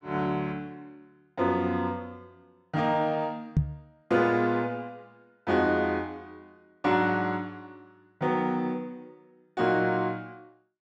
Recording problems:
microphone bump; at 3.5 s; peak +7 dB vs average level

